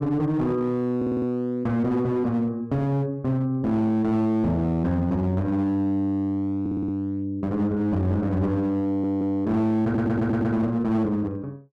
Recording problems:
distorted audio; hard clipping, uneven, signal-to-distortion ratio 11 dB
stutter; 4 times, first at 1 s

